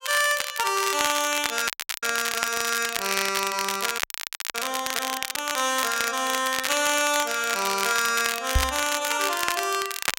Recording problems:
crackle; vinyl, SNR 4 dB
frozen audio; at 1.5 s and at 4 s for 0.5 s
microphone thump; at 8.5 s; peak +5 dB vs average level

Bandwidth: 16 kHz